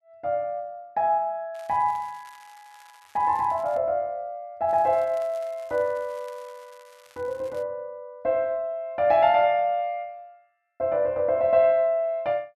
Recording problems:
crackling; from 1.5 to 4 s and from 4.5 to 7.5 s; loose cable, SNR 29 dB

